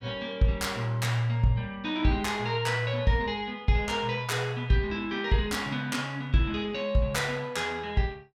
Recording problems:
none

